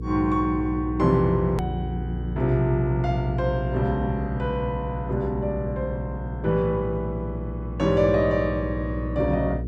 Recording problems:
hum; 60 Hz, harmonics up to 480 Hz, SNR 6 dB
hard cut with a click; at 1.5 s

